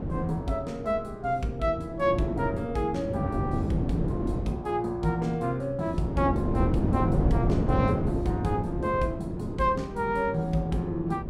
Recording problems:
wind on the microphone; below 310 Hz, SNR 1 dB

